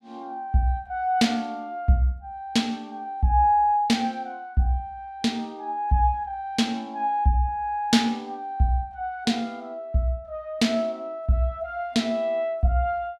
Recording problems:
none

